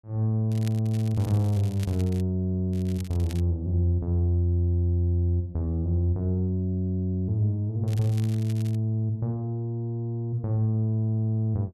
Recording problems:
crackle; from 0.5 to 2 s, at 2.5 s and at 8 s; loose cable, SNR 22 dB

